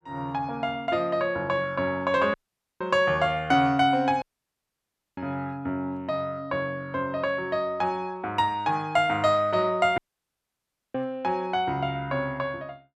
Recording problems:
dropout; at 2.5 s, at 4 s for 1 s and at 10 s for 1 s

